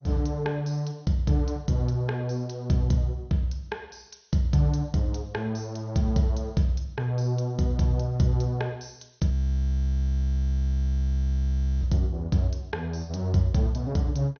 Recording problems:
lossy compression; MP2, log-spectral distance 3 dB, nothing above 6.3 kHz
audio freezing; at 9.5 s for 2.5 s

